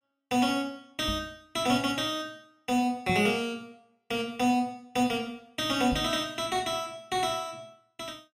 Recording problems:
microphone bump; at 1 s, at 3 s and at 6 s; peak -2 dB vs average level

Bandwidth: 15 kHz